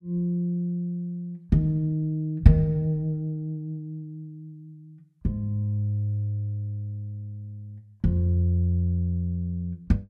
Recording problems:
none

